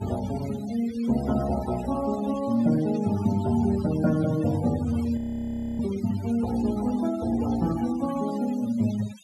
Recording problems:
noise reduction artefacts; signal-to-artefact ratio 16 dB
audio freezing; at 5 s for 0.5 s

